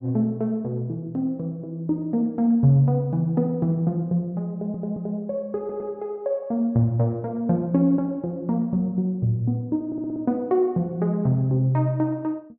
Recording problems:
stutter; at 4.5 s, at 5.5 s and at 10 s

